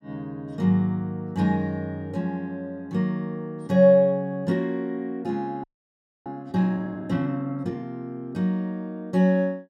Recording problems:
audio freezing; at 5.5 s for 0.5 s

